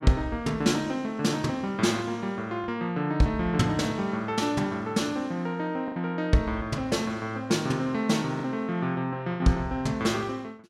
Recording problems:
lost packets; 2% of the sound replaced, filled with the last packet

